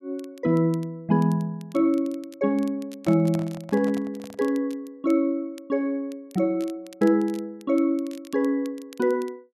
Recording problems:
crackle; vinyl, SNR 26 dB
handling noise; from 3 to 4.5 s; peak -7 dB vs average level

